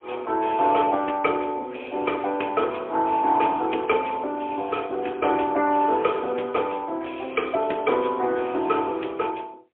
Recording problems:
telephone audio; 260 Hz to 3.4 kHz, AMR-NB, then MP3

